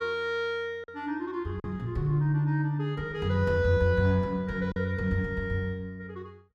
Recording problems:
lost packets; 1.9% of the sound replaced, filled with silence

